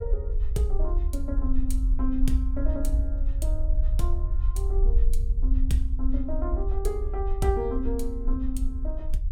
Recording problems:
low-frequency rumble; below 54 Hz, SNR -4 dB

